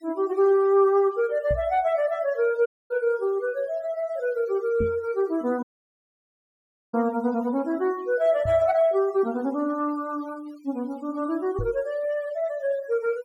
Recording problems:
denoising artefacts; signal-to-artefact ratio 25 dB
microphone thump; 4 times, first at 1.5 s; peak -2 dB vs average level
audio cutting out; at 2.5 s and at 5.5 s for 1.5 s

